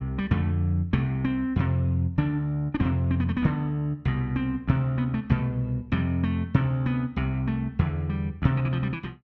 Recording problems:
none

